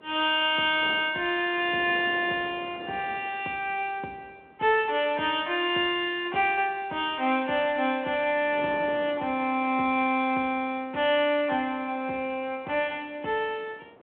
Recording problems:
phone line; 260 Hz to 3.4 kHz, G.726
wind on the microphone; below 860 Hz, SNR 22 dB

